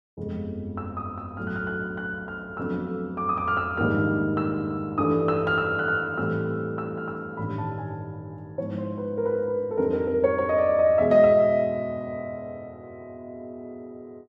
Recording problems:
none

